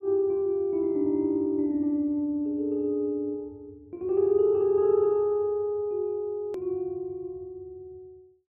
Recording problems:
click at an edit; at 6.5 s

